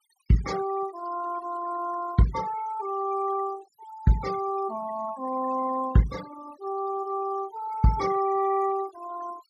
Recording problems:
denoising artefacts; signal-to-artefact ratio 17 dB

